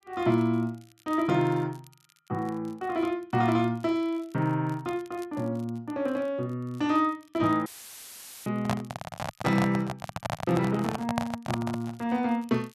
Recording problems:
crackle; vinyl, SNR 29 dB
audio cutting out; at 7.5 s for 1 s; filled with static
handling noise; from 8.5 to 12 s; peak +4 dB vs average level

